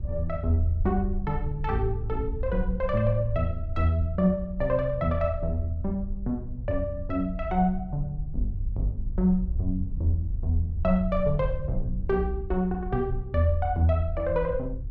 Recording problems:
wind on the microphone; below 68 Hz, SNR 7 dB

